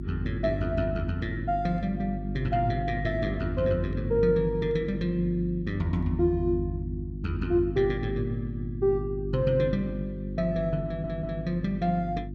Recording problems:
mains hum; 50 Hz, harmonics up to 350 Hz, SNR 6 dB
stutter; at 11 s

